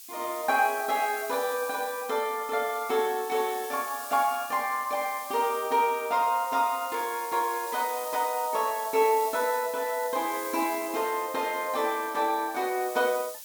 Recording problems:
background hiss; SNR 12 dB

